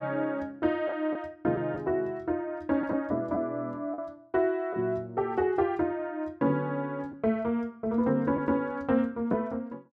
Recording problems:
lost packets; 1.8% of the sound replaced, filled with the last packet

